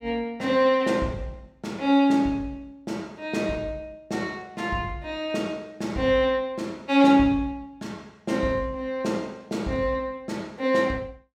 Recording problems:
none

